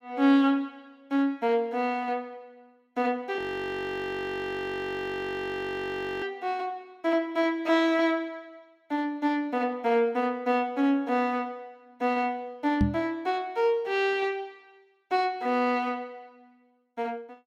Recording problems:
audio freezing; at 3.5 s for 3 s
knock on the microphone; at 13 s; peak +7 dB vs average level

